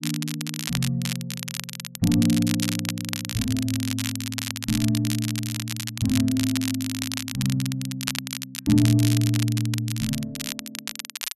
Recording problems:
crackling; vinyl, SNR 6 dB

